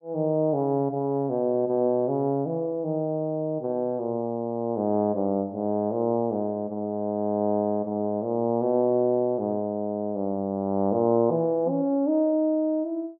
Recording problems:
none

